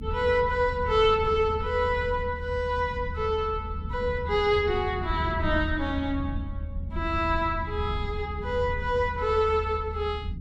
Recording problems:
rumble; below 98 Hz, SNR 8 dB

